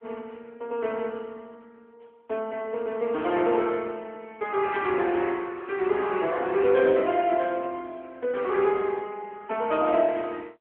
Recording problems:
phone line; 280 Hz to 3.4 kHz, AMR-NB

